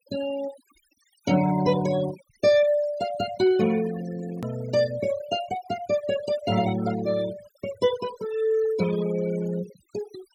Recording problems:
noise reduction artefacts; signal-to-artefact ratio 15 dB
click at an edit; at 4.5 s

